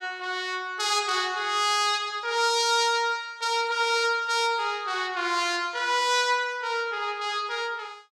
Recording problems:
none

